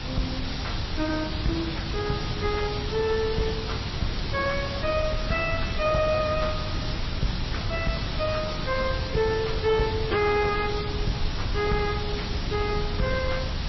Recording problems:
lossy codec; AAC, then MP3, log-spectral distance 8 dB, nothing above 5.7 kHz
distorted audio; soft clipping, signal-to-distortion ratio 10 dB
hiss; slope -3 dB per octave, SNR 6 dB
low-frequency rumble; below 110 Hz, SNR 5 dB

